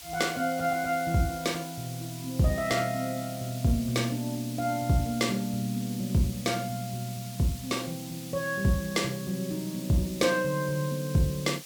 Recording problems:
background hiss; slope +2 dB per octave, SNR 13 dB

